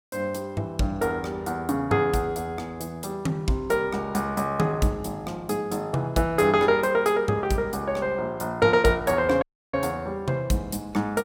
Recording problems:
dropout; at 9.5 s

